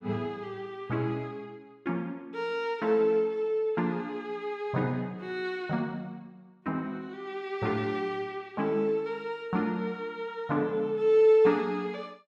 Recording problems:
none

